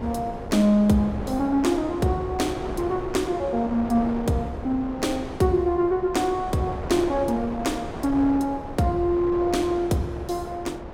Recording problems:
wind on the microphone; below 700 Hz, SNR 11 dB

